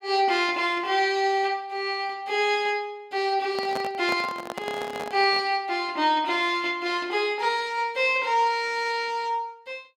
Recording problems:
handling noise; from 3.5 to 5.5 s; peak -3 dB vs average level

